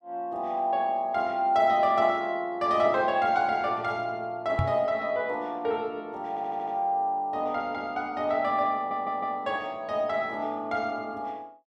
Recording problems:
microphone bump; at 4.5 s; peak +3 dB vs average level
stutter; at 6.5 s and at 9 s

